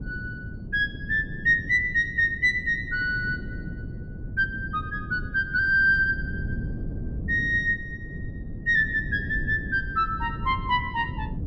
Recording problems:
wind on the microphone; below 190 Hz, SNR 11 dB

